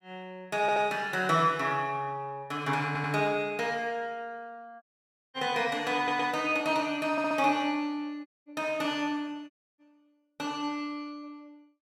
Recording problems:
audio stuttering; 4 times, first at 0.5 s
dropout; at 5 s for 0.5 s, at 8.5 s and at 9.5 s

